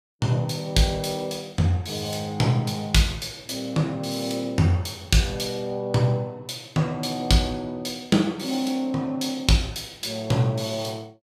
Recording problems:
none

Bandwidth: 15 kHz